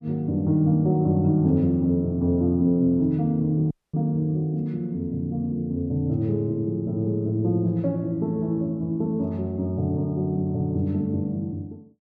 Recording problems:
audio cutting out; at 3.5 s

